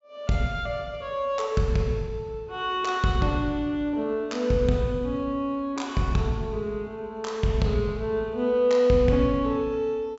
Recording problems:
treble cut off; nothing above 8 kHz

